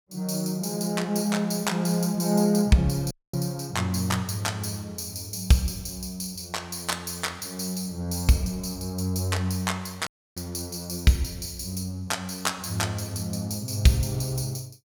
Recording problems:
audio cutting out; at 3 s and at 10 s

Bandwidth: 17.5 kHz